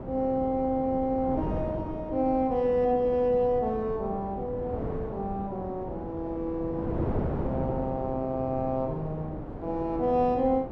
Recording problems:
wind on the microphone; below 470 Hz, SNR 7 dB

